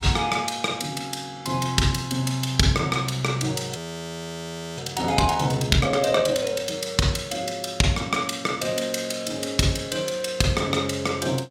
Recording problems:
audio freezing; at 4 s for 1 s

